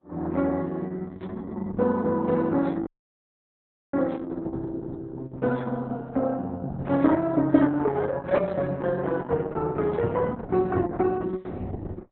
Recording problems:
lossy compression; AAC, then Opus, log-spectral distance 3 dB, nothing above 4 kHz
audio cutting out; at 3 s for 1 s

